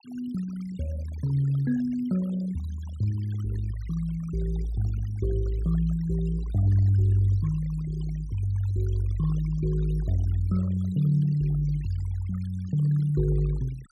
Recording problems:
noise reduction artefacts; signal-to-artefact ratio 23 dB

